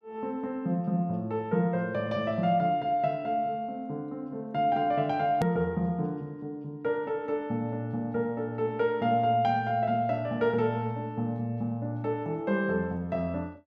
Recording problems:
edit click; at 5.5 s

